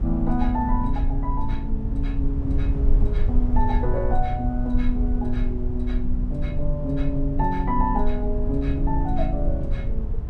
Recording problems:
rumble; below 58 Hz, SNR -1 dB

